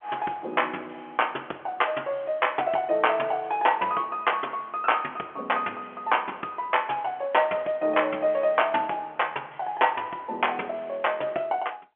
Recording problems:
phone line; 280 Hz to 3.3 kHz, G.711

